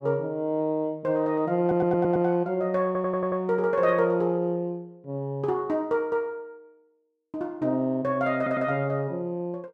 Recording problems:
stutter; at 1.5 s, at 3 s and at 8.5 s

